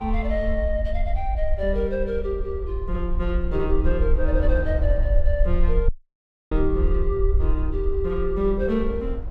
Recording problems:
rumble; below 56 Hz, SNR 0 dB
wind on the microphone; below 480 Hz, SNR 17 dB
dropout; at 6 s for 0.5 s

